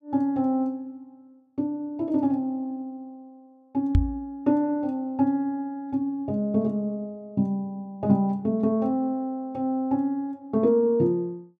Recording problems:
knock on the microphone; at 4 s; peak +9 dB vs average level

